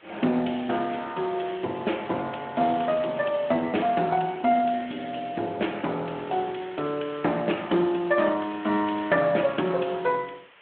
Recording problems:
phone line; 260 Hz to 3.6 kHz, Speex
hiss; SNR 26 dB

